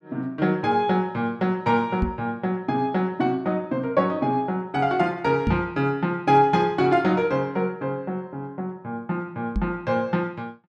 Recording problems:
microphone bump; at 2 s, at 5.5 s and at 9.5 s; peak +3 dB vs average level

